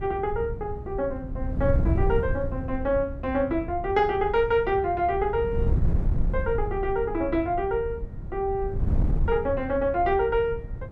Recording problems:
wind on the microphone; below 110 Hz, SNR 5 dB

